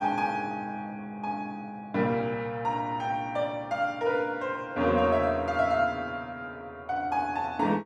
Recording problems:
none

